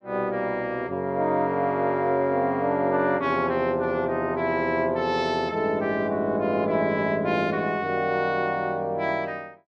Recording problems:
none

